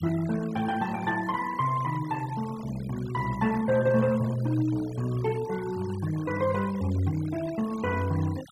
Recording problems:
noise reduction artefacts; signal-to-artefact ratio 17 dB

